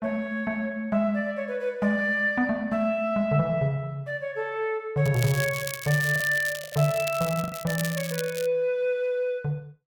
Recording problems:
lost packets; 2% of the sound replaced, filled with the last packet
crackling; from 5 to 8.5 s; loose cable, SNR 10 dB

